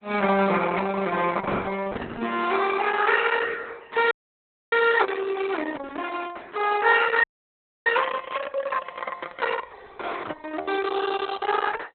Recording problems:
lossy codec; Opus, log-spectral distance 5 dB, nothing above 4 kHz
frozen audio; at 4 s for 0.5 s and at 7 s for 0.5 s

